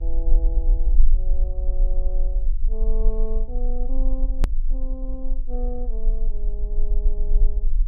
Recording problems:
electrical hum; 60 Hz, harmonics up to 1.2 kHz, SNR 24 dB
rumble; below 34 Hz, strongest tone 20 Hz, SNR -13 dB
edit click; at 4.5 s

